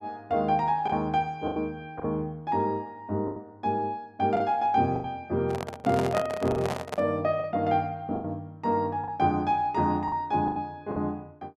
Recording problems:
lost packets; 7% of the sound replaced, filled with the last packet
handling noise; from 5.5 to 7 s; peak +1 dB vs average level

